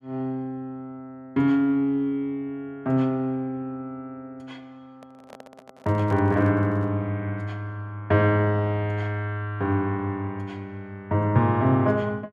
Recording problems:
microphone handling noise; from 5 to 7 s; peak -12 dB vs average level

